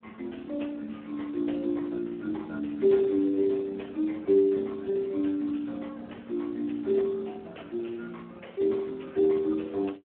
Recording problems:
telephone audio; 260 Hz to 2 kHz, Speex

